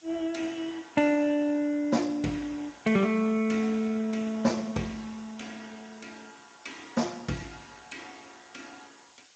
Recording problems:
lossy compression; Speex, log-spectral distance 10 dB, nothing above 7.3 kHz
hiss; slope +1 dB per octave, SNR 27 dB

